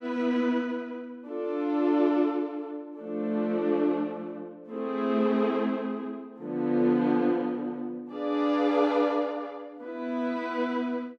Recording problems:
none

